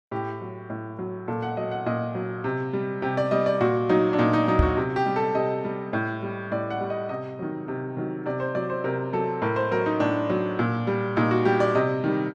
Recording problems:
microphone thump; at 4.5 s; peak +8 dB vs average level

